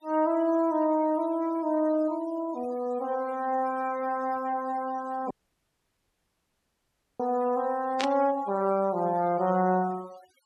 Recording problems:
denoising artefacts; signal-to-artefact ratio 21 dB
audio cutting out; at 5.5 s for 2 s
static burst; at 8 s; peak 0 dB vs average level

